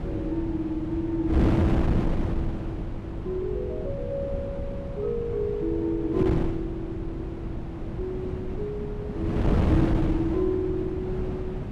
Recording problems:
wind noise; below 280 Hz, SNR -1 dB

